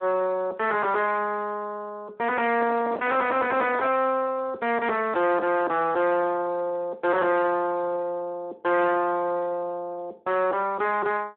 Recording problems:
phone line; 190 Hz to 3.6 kHz, Speex
distorted audio; soft clipping, signal-to-distortion ratio 6 dB
microphone handling noise; from 2.5 to 4 s; peak -2 dB vs average level

